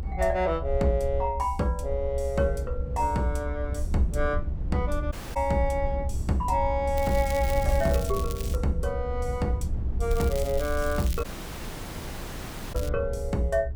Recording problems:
rumble; below 70 Hz, SNR 5 dB
wind noise; below 130 Hz, SNR 9 dB
dropout; at 5 s and at 11 s for 1.5 s
crackle; from 7 to 8.5 s and from 10 to 13 s; loose cable, SNR 13 dB

